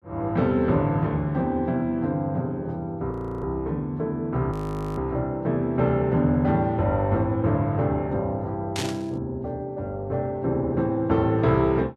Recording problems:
audio freezing; at 3 s and at 4.5 s
burst of static; at 9 s; peak -2 dB vs average level

